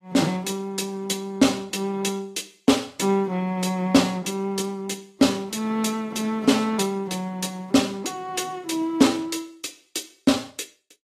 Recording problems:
lossy compression; AAC, log-spectral distance 3 dB

